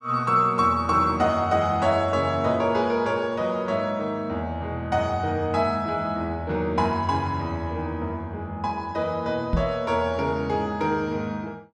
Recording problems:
microphone bump; at 9.5 s; peak +4 dB vs average level

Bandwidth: 12 kHz